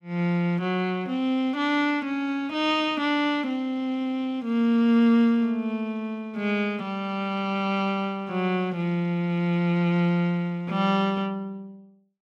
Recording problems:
none

